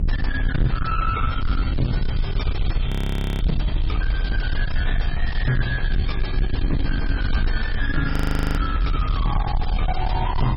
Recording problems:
lossy compression; MP3, log-spectral distance 3 dB, nothing above 16 kHz
distorted audio; soft clipping, signal-to-distortion ratio 6 dB
low-frequency rumble; below 84 Hz, SNR -2 dB
audio freezing; at 3 s for 0.5 s and at 8 s

